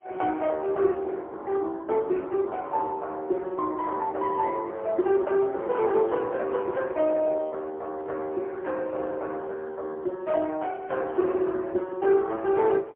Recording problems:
phone line; 240 Hz to 3.6 kHz, AMR-NB, then MP3

